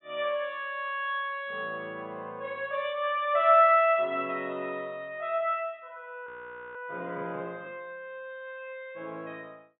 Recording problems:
treble missing; nothing above 3.7 kHz
audio freezing; at 6.5 s

